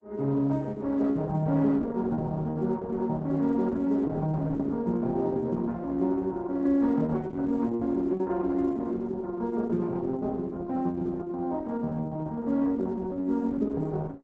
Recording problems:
lossy compression; Opus, log-spectral distance 2 dB, nothing above 7.3 kHz

